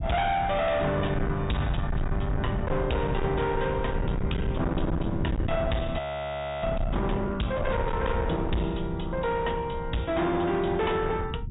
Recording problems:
treble cut off; nothing above 4 kHz
distorted audio; hard clipping, uneven, signal-to-distortion ratio 7 dB
rumble; below 170 Hz, SNR 4 dB
frozen audio; at 6 s for 0.5 s

